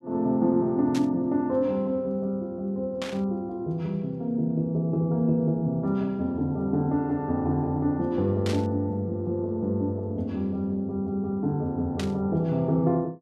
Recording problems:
static burst; 4 times, first at 1 s; peak -4 dB vs average level

